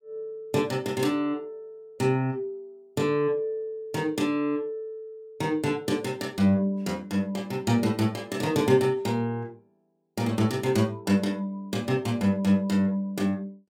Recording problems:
none

